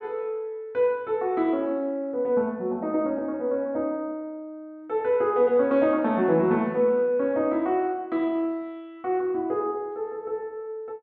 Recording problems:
none

